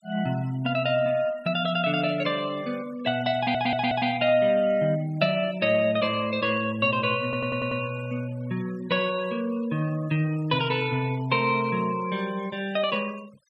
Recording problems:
noise reduction artefacts; signal-to-artefact ratio 21 dB
audio stuttering; at 3.5 s and at 7 s

